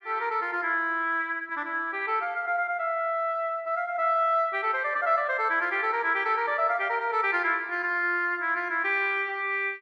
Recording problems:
none

